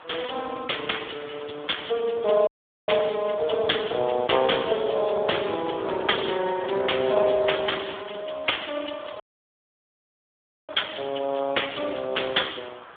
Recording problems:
telephone audio; 300 Hz to 3.6 kHz, Speex
background hiss; SNR 20 dB
dropout; at 2.5 s and at 9 s for 1.5 s

